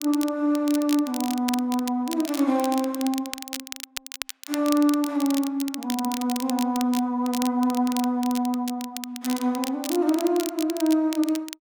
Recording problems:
crackling; vinyl, SNR 11 dB

